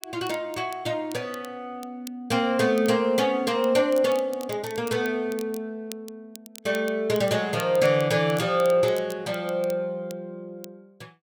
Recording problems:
crackling; vinyl, SNR 21 dB

